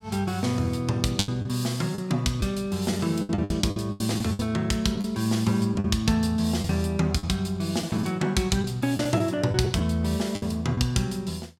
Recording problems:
lost packets; 8% of the sound replaced, filled with the last packet

